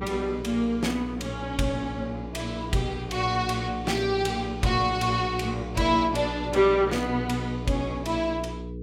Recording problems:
electrical hum; 60 Hz, harmonics up to 480 Hz, SNR 10 dB

